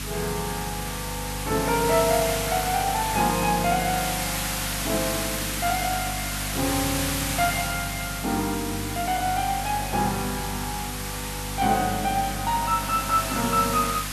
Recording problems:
hum; 50 Hz, harmonics up to 300 Hz, SNR 9 dB
hiss; SNR 3 dB

